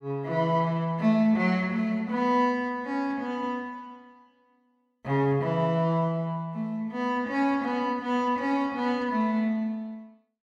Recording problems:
none

